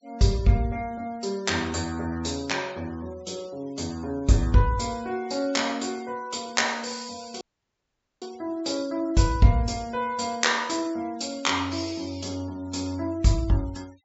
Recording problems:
treble missing; nothing above 8 kHz
denoising artefacts; signal-to-artefact ratio 24 dB
dropout; at 7.5 s for 1 s

